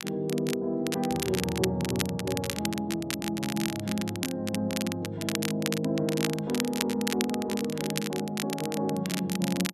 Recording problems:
crackling; vinyl, SNR 5 dB

